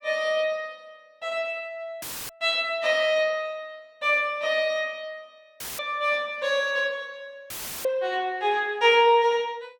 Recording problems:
dropout; at 2 s, at 5.5 s and at 7.5 s; filled with static

